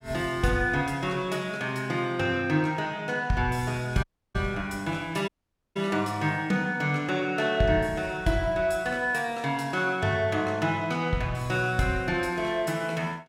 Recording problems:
dropout; at 4 s and at 5.5 s

